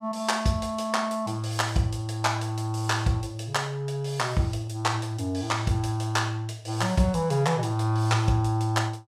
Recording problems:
none

